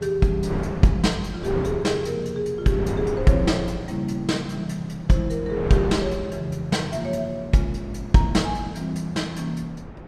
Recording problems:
wind on the microphone; below 570 Hz, SNR 12 dB

